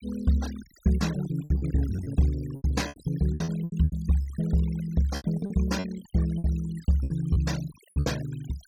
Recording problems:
denoising artefacts; signal-to-artefact ratio 18 dB
lost packets; 13% of the sound replaced, filled with repeated pitch periods

